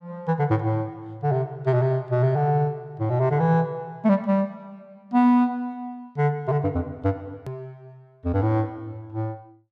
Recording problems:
click at an edit; at 7.5 s

